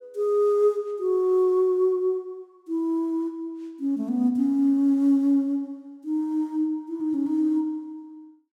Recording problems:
none

